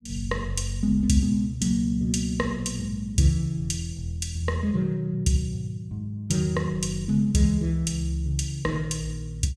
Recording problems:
none

